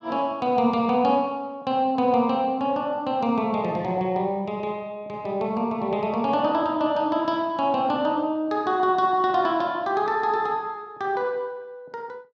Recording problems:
none

